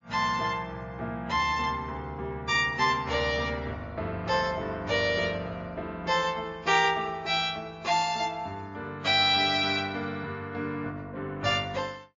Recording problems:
lossy compression; MP3, log-spectral distance 2 dB

